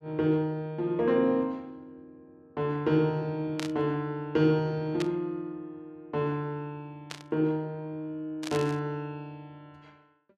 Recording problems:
burst of static; 4 times, first at 3.5 s; peak -3 dB vs average level

